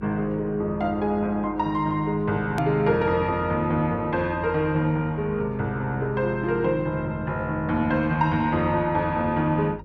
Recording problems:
hum; 50 Hz, harmonics up to 550 Hz, SNR 19 dB
edit click; at 2.5 s

